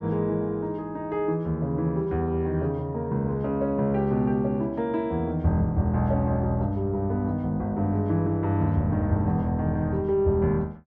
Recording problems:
none

